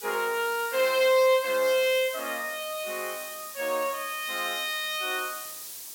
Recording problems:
hiss; SNR 12 dB

